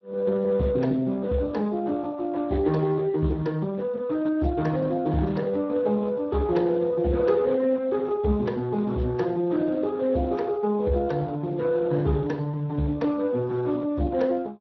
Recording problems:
low-pass filter; nothing above 5.8 kHz
codec artefacts; Speex, log-spectral distance 3 dB

